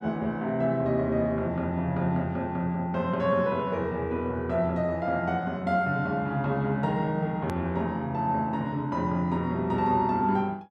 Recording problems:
click at an edit; at 7.5 s

